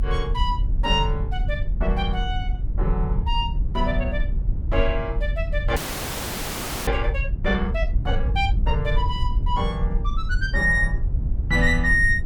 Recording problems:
low-frequency rumble; below 68 Hz, SNR 1 dB
frozen audio; at 6 s for 1 s

